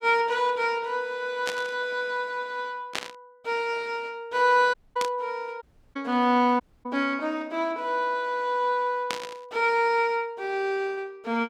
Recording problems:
burst of static; 4 times, first at 1.5 s; peak +1 dB vs average level
dropout; at 4.5 s, at 5.5 s and at 6.5 s

